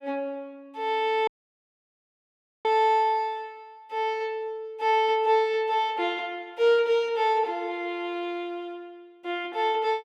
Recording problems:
audio cutting out; at 1.5 s for 1.5 s

